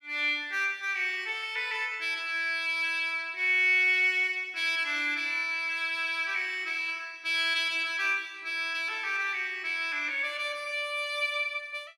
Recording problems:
none

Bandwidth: 15 kHz